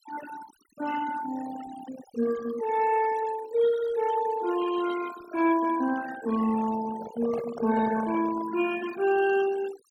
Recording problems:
denoising artefacts; signal-to-artefact ratio 13 dB
handling noise; from 7 to 8.5 s; peak -7 dB vs average level

